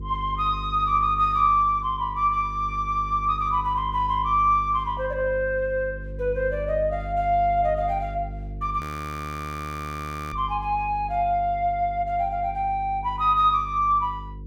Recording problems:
hum; 50 Hz, harmonics up to 450 Hz, SNR 12 dB
frozen audio; at 9 s for 1.5 s

